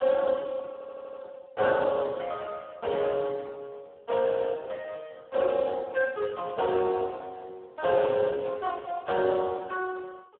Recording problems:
telephone audio; 280 Hz to 2.9 kHz, Speex
stutter; at 0.5 s

